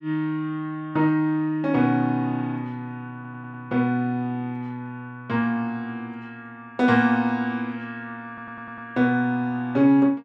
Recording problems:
audio stuttering; at 3 s and at 8.5 s

